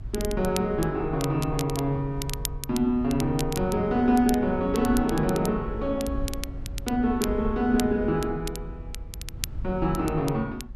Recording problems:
rumble; below 82 Hz, SNR 12 dB
crackle; vinyl, SNR 13 dB

